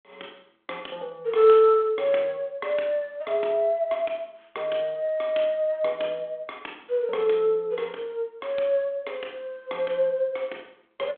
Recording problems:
phone line; 280 Hz to 3.5 kHz, G.726

